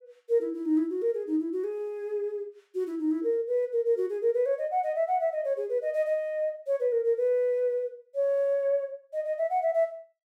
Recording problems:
none

